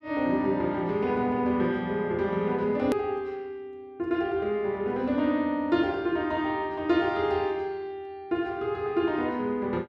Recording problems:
click at an edit; at 3 s

